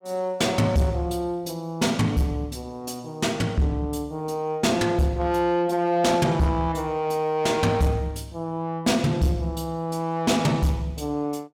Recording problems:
distorted audio; soft clipping, signal-to-distortion ratio 11 dB

